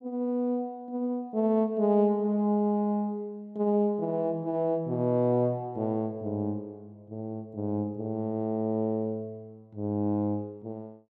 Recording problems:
none

